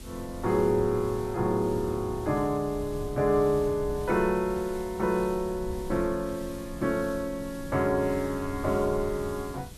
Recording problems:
hiss; SNR 21 dB
wind on the microphone; below 120 Hz, SNR 15 dB

